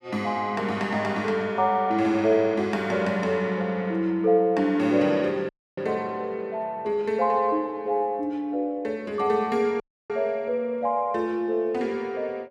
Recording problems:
audio cutting out; at 5.5 s and at 10 s

